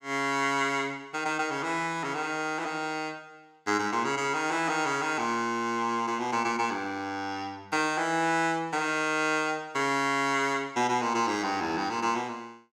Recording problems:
none

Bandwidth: 17 kHz